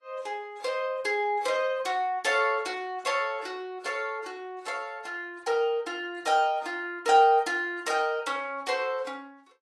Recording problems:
lossy codec; AAC, log-spectral distance 2 dB

